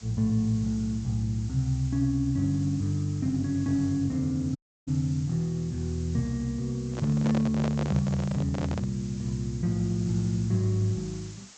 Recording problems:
treble missing; nothing above 8 kHz
hiss; slope +1 dB per octave, SNR 21 dB
dropout; at 4.5 s
handling noise; from 7 to 9 s; peak -2 dB vs average level

